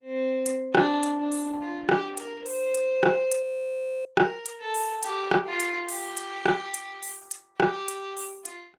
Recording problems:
codec artefacts; Opus, log-spectral distance 4 dB
frozen audio; at 3.5 s for 0.5 s

